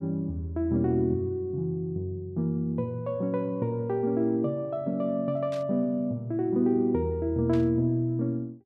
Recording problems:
burst of static; at 5.5 s and at 7.5 s; peak -13 dB vs average level

